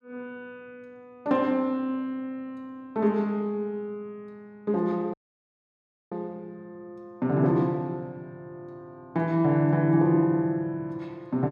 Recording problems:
audio cutting out; at 5 s for 1 s

